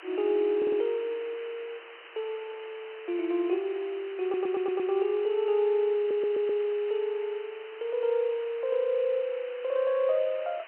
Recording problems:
phone line; 190 Hz to 3.2 kHz, G.711
hiss; SNR 18 dB
stutter; at 0.5 s, at 4 s and at 6 s

